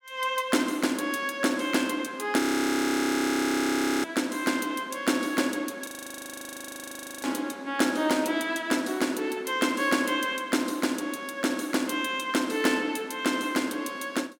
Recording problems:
frozen audio; at 2.5 s for 1.5 s and at 6 s for 1.5 s

